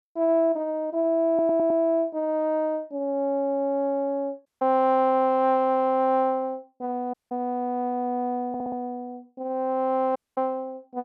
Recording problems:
audio stuttering; at 1.5 s and at 8.5 s
dropout; at 4.5 s, at 7 s and at 10 s

